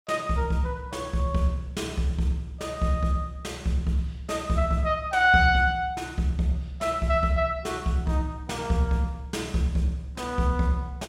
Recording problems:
none

